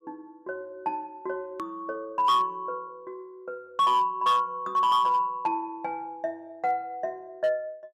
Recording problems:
distortion; hard clipping, signal-to-distortion ratio 12 dB
click at an edit; at 1.5 s

